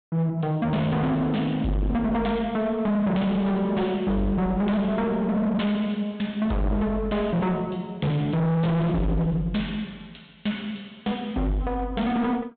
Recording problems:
treble missing; nothing above 4 kHz
distortion; hard clipping, signal-to-distortion ratio 6 dB

